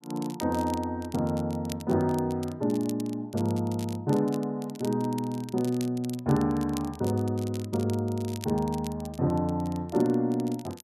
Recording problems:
crackle; vinyl, SNR 18 dB

